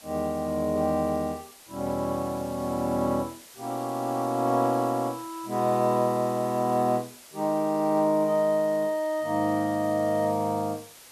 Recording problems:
background hiss; slope 0 dB per octave, SNR 20 dB

